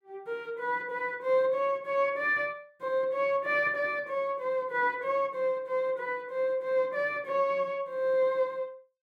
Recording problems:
none

